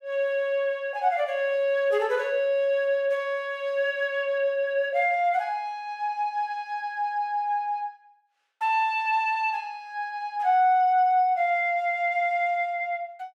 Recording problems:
none

